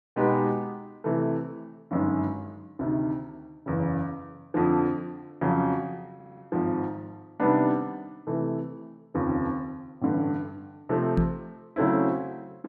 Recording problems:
stutter; at 6 s
knock on the microphone; at 11 s; peak +7 dB vs average level

